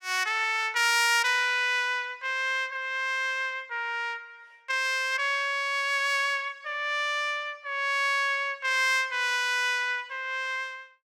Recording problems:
none

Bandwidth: 17 kHz